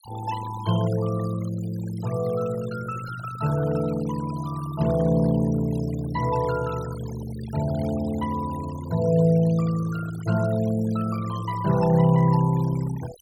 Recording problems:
denoising artefacts; signal-to-artefact ratio 18 dB

